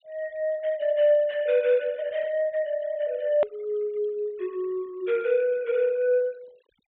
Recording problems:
treble missing; nothing above 4 kHz
noise reduction artefacts; signal-to-artefact ratio 27 dB
click at an edit; at 3.5 s

